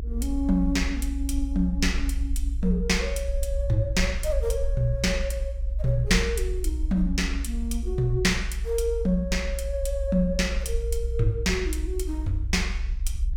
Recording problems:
rumble; below 60 Hz, SNR 3 dB

